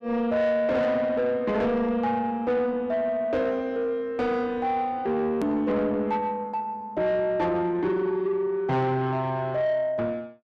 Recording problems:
distorted audio; soft clipping, signal-to-distortion ratio 12 dB
hard cut with a click; at 5.5 s

